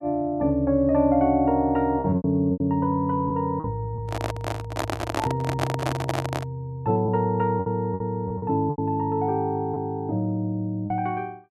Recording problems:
packet loss; 6% of the sound replaced, filled with repeated pitch periods
handling noise; from 4 to 6.5 s; peak +3 dB vs average level

